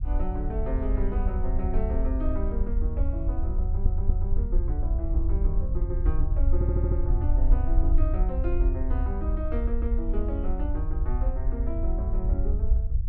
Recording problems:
low-frequency rumble; below 60 Hz, SNR -7 dB
stutter; at 3.5 s and at 6.5 s

